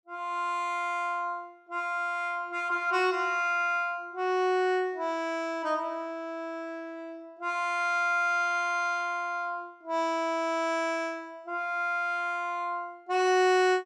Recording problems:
none

